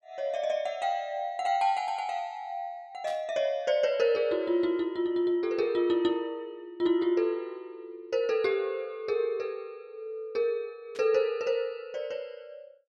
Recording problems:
static burst; at 3 s and at 11 s; peak -13 dB vs average level

